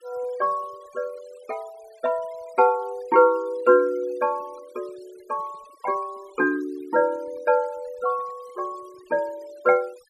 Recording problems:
noise reduction artefacts; signal-to-artefact ratio 27 dB

